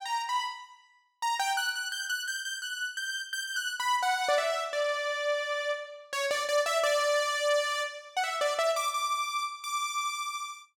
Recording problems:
none

